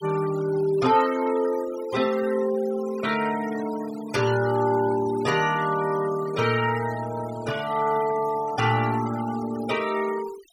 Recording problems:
noise reduction artefacts; signal-to-artefact ratio 15 dB

